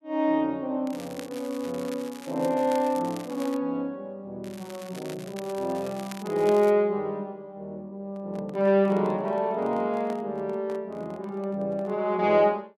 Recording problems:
crackling; from 1 to 3.5 s and from 4.5 to 6.5 s; loose cable, SNR 18 dB
handling noise; from 8 to 12 s; peak -10 dB vs average level

